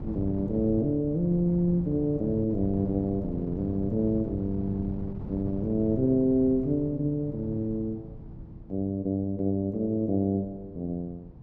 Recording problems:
wind noise; below 200 Hz, SNR 11 dB

